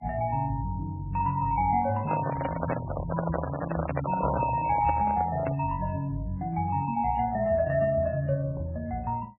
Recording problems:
lossy codec; MP3, log-spectral distance 3 dB, nothing above 2.6 kHz
microphone handling noise; from 2 to 5.5 s; peak +2 dB vs average level

